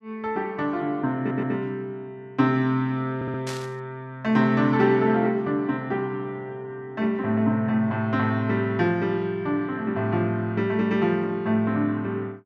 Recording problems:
audio stuttering; at 1 s and at 3 s
static burst; at 3.5 s; peak -7 dB vs average level

